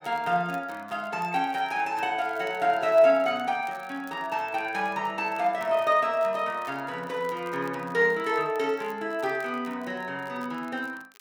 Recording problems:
crackle; vinyl, SNR 27 dB

